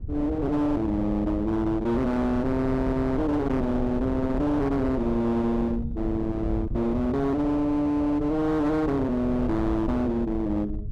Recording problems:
distortion; hard clipping, uneven, signal-to-distortion ratio 8 dB
wind noise; below 160 Hz, SNR 8 dB

